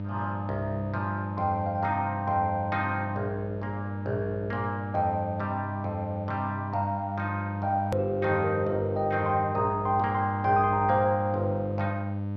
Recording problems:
electrical hum; 50 Hz, harmonics up to 900 Hz, SNR 5 dB
hard cut with a click; at 8 s

